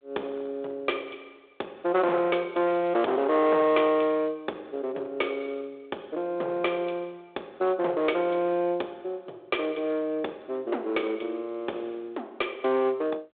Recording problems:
phone line; 340 Hz to 3.5 kHz, G.726
distorted audio; hard clipping, uneven, signal-to-distortion ratio 11 dB

